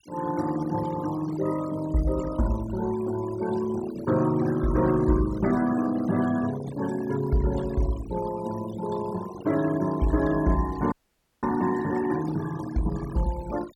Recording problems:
denoising artefacts; signal-to-artefact ratio 15 dB
frozen audio; at 11 s for 0.5 s

